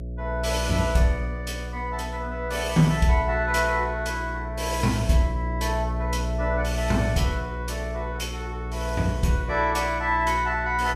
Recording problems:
electrical hum; 60 Hz, harmonics up to 660 Hz, SNR 6 dB

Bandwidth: 14.5 kHz